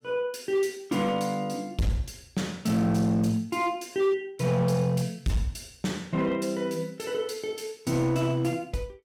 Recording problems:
distortion; hard clipping, signal-to-distortion ratio 12 dB

